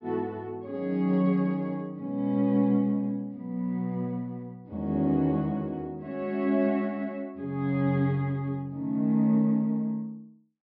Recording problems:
treble missing; nothing above 5.5 kHz

